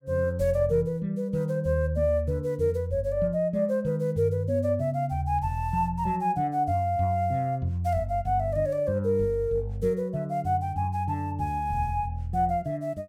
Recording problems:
none

